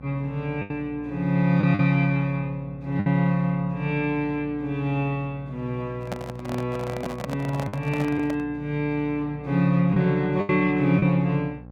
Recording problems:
hum; 60 Hz, harmonics up to 1.1 kHz, SNR 19 dB
lost packets; 3% of the sound replaced, filled with the last packet
handling noise; from 6 to 8.5 s; peak -3 dB vs average level

